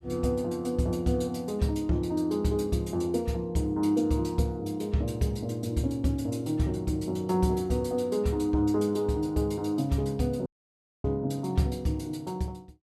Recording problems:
audio cutting out; at 10 s for 0.5 s

